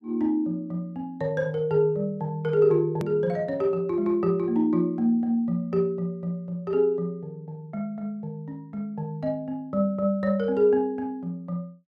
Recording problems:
edit click; at 3 s

